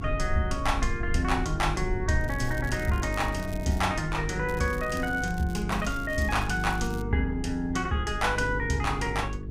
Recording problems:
electrical hum; 50 Hz, harmonics up to 450 Hz, SNR 8 dB
low-frequency rumble; below 70 Hz, SNR 10 dB
crackle; from 2 to 4 s, from 4.5 to 5.5 s and from 5.5 to 7 s; loose cable, SNR 20 dB

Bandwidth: 15.5 kHz